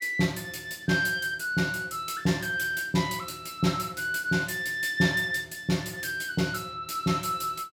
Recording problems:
none

